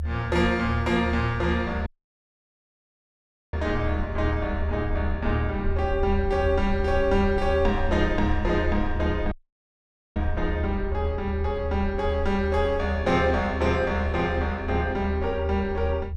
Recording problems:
low-frequency rumble; below 78 Hz, strongest tone 78 Hz, SNR 5 dB
audio cutting out; at 2 s for 1.5 s and at 9.5 s for 1 s

